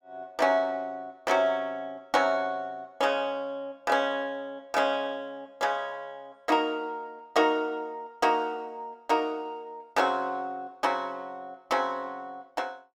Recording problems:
none

